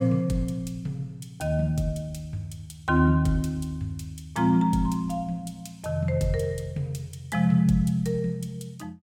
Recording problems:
none

